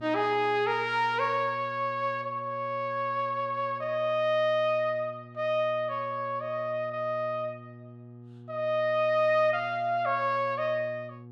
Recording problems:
electrical hum; 60 Hz, harmonics up to 840 Hz, SNR 19 dB

